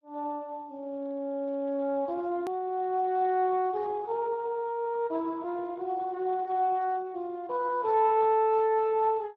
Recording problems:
lossy compression; Speex, log-spectral distance 2 dB
hard cut with a click; at 2.5 s

